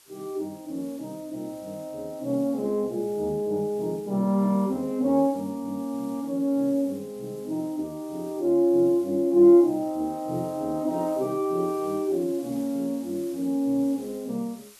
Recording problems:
hiss; slope +1 dB per octave, SNR 25 dB

